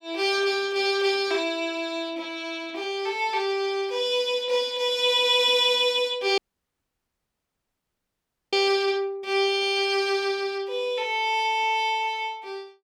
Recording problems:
dropout; at 6.5 s for 2 s

